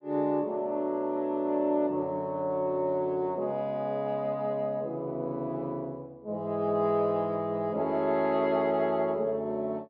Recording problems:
treble missing; nothing above 5.5 kHz

